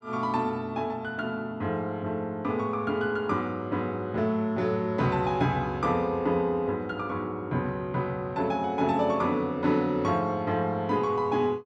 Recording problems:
none

